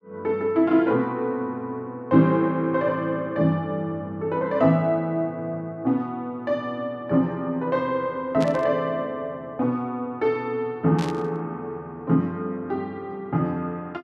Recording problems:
static burst; at 8.5 s and at 11 s; peak -7 dB vs average level

